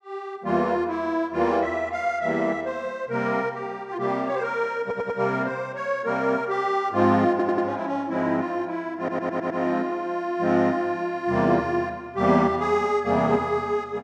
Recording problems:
audio stuttering; at 5 s, at 7.5 s and at 9 s

